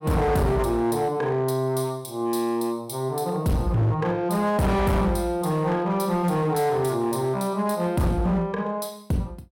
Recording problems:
distortion; hard clipping, signal-to-distortion ratio 7 dB

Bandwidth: 16.5 kHz